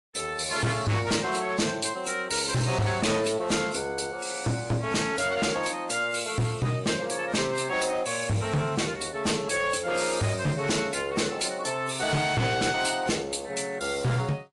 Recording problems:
lossy codec; AAC, then MP3, log-spectral distance 6 dB, nothing above 11 kHz
distortion; hard clipping, uneven, signal-to-distortion ratio 6 dB

